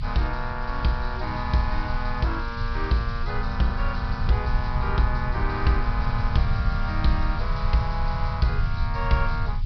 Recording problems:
treble missing; nothing above 5.5 kHz
background hiss; SNR 18 dB
rumble; below 84 Hz, strongest tone 28 Hz, SNR 1 dB

